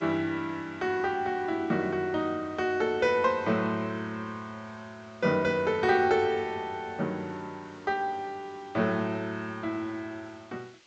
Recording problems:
treble missing; nothing above 8 kHz
hiss; SNR 27 dB

